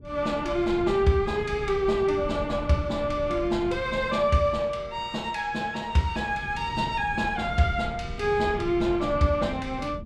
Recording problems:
wind on the microphone; below 170 Hz, SNR 12 dB

